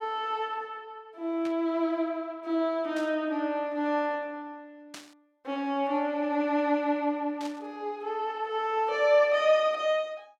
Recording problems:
static burst; 4 times, first at 1.5 s; peak -10 dB vs average level

